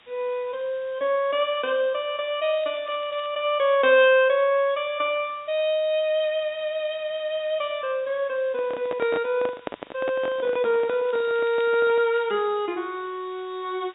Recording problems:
low-pass filter; nothing above 4 kHz
background hiss; SNR 29 dB
crackle; at 2.5 s and from 11 to 12 s; loose cable, SNR 27 dB
microphone handling noise; from 8.5 to 12 s; peak -3 dB vs average level

